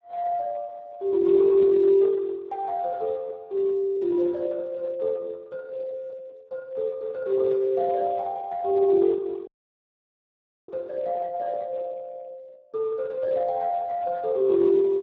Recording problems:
codec artefacts; Speex, log-spectral distance 2 dB
dropout; at 9.5 s for 1 s

